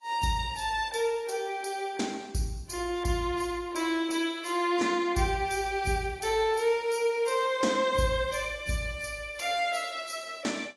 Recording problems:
lossy codec; AAC, log-spectral distance 4 dB, nothing above 11.3 kHz

